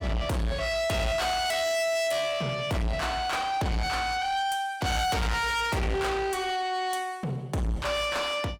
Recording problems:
distortion; soft clipping, signal-to-distortion ratio 6 dB

